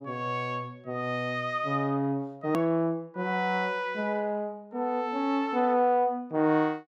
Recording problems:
edit click; at 2.5 s

